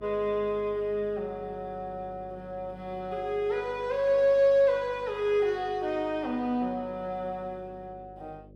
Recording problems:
hum; 50 Hz, harmonics up to 600 Hz, SNR 22 dB

